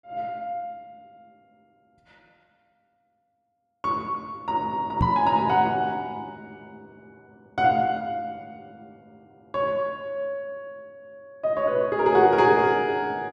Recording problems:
microphone bump; at 5 s; peak +4 dB vs average level

